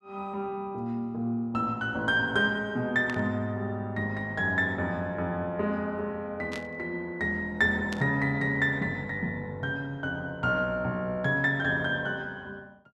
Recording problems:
static burst; at 3 s, at 6.5 s and at 8 s; peak -6 dB vs average level

